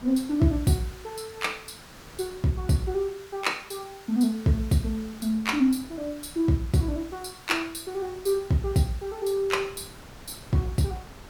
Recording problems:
background hiss; SNR 21 dB
wind on the microphone; below 650 Hz, SNR 23 dB

